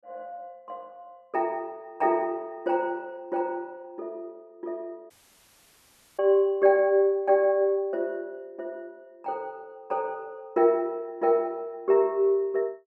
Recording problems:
dropout; at 5 s for 1 s

